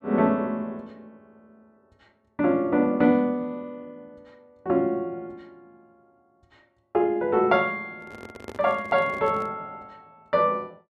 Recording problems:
microphone handling noise; from 8 to 9.5 s; peak -9 dB vs average level

